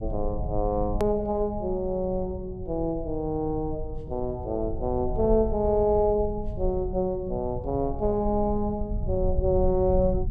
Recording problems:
low-frequency rumble; below 86 Hz, SNR 8 dB
click at an edit; at 1 s

